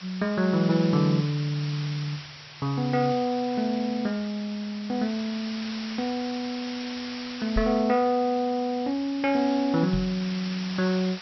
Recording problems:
treble missing; nothing above 5.7 kHz
hiss; slope +1 dB per octave, SNR 12 dB
microphone bump; at 7.5 s and at 10 s; peak 0 dB vs average level

